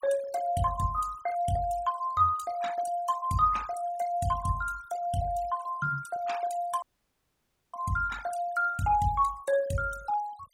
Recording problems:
denoising artefacts; signal-to-artefact ratio 17 dB
dropout; at 7 s for 1 s

